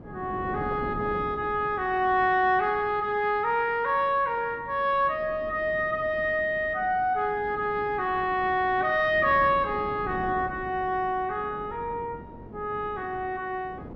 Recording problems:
wind on the microphone; below 400 Hz, SNR 16 dB

